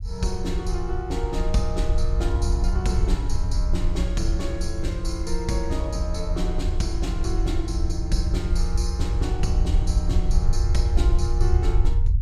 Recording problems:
rumble; below 70 Hz, SNR -4 dB

